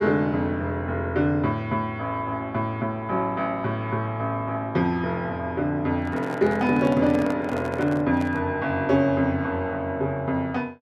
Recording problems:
handling noise; from 6 to 8.5 s; peak -7 dB vs average level

